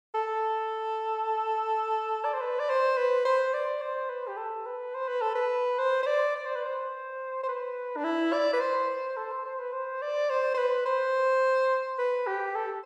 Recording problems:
none

